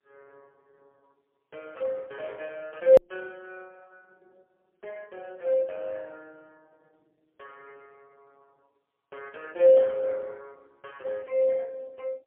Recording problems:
telephone audio; 220 Hz to 3.3 kHz, AMR-NB, then MP3
click at an edit; at 3 s

